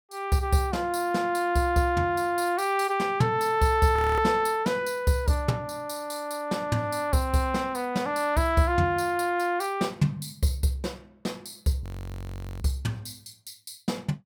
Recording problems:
audio freezing; at 4 s and at 12 s for 1 s

